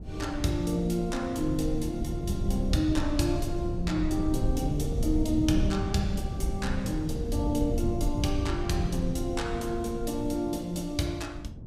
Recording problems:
rumble; below 120 Hz, SNR 4 dB

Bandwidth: 15.5 kHz